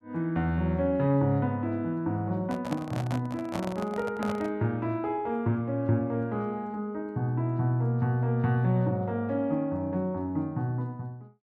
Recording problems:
handling noise; from 2.5 to 4.5 s; peak -2 dB vs average level

